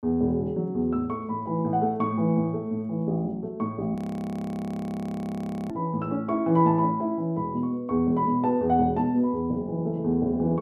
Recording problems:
frozen audio; at 4 s for 2 s

